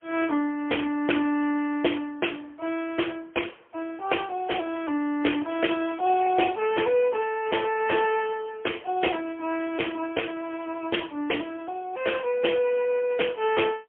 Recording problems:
phone line; 260 Hz to 3.3 kHz, AMR-NB, then MP3

